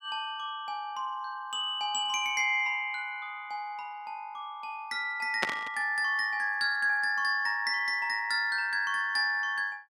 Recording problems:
burst of static; at 5.5 s; peak +4 dB vs average level

